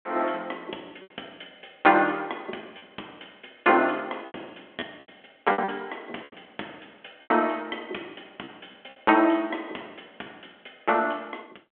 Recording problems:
telephone audio; 240 Hz to 3.4 kHz, G.726
lost packets; 6% of the sound replaced, filled with repeated pitch periods

